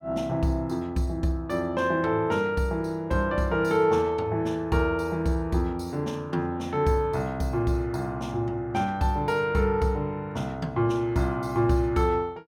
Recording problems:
none

